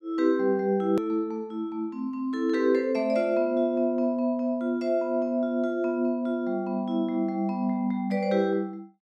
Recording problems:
hard cut with a click; at 1 s

